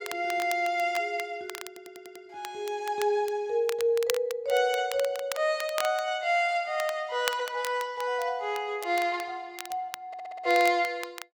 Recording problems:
crackle; vinyl, SNR 13 dB
audio stuttering; at 1.5 s and at 10 s

